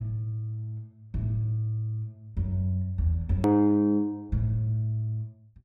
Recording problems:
click at an edit; at 3.5 s

